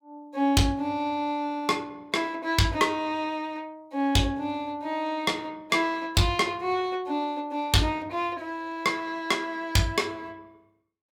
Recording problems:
distorted audio; hard clipping, signal-to-distortion ratio 11 dB

